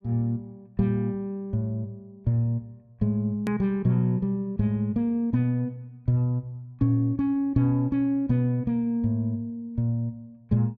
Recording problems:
edit click; at 3.5 s

